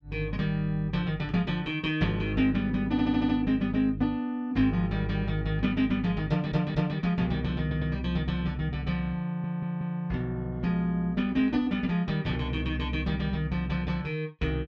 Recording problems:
stutter; 4 times, first at 3 s

